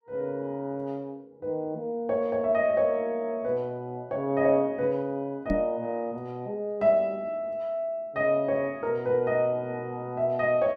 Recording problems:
microphone thump; at 5.5 s; peak +3 dB vs average level

